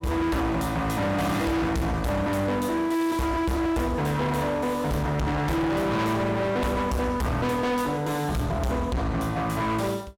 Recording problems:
distorted audio; hard clipping, signal-to-distortion ratio 6 dB

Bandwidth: 17.5 kHz